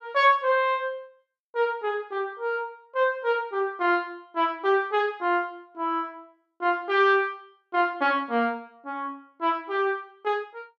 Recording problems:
none

